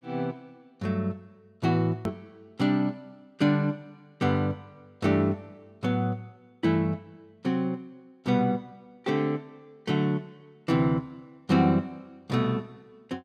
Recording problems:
click at an edit; at 2 s

